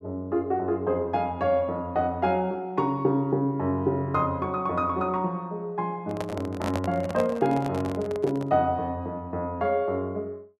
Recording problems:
handling noise; from 6 to 8.5 s; peak 0 dB vs average level

